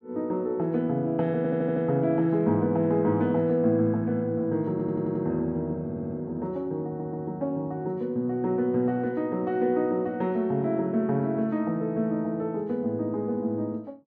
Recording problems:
audio stuttering; 4 times, first at 1.5 s

